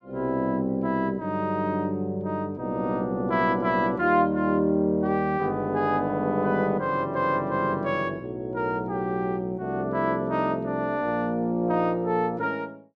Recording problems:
none

